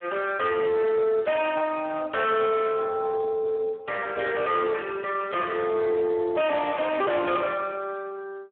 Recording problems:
telephone audio; 240 Hz to 3.3 kHz, Speex
distortion; hard clipping, uneven, signal-to-distortion ratio 11 dB

